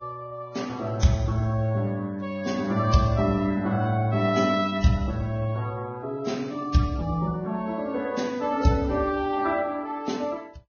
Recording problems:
codec artefacts; Vorbis, log-spectral distance 3 dB, nothing above 6.5 kHz

